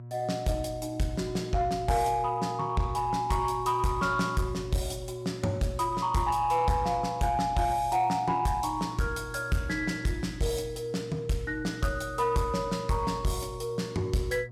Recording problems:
distortion; soft clipping, signal-to-distortion ratio 12 dB
hum; 60 Hz, harmonics up to 720 Hz, SNR 15 dB

